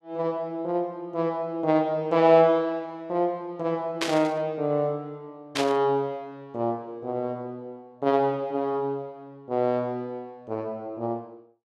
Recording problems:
static burst; at 4 s and at 5.5 s; peak +3 dB vs average level

